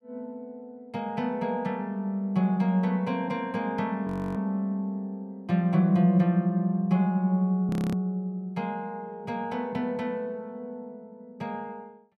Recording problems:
frozen audio; at 4 s and at 7.5 s

